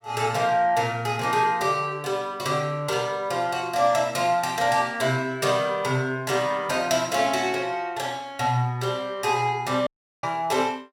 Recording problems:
dropout; at 10 s

